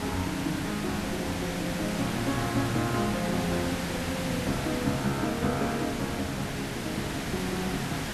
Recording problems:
hiss; slope -3 dB per octave, SNR 2 dB

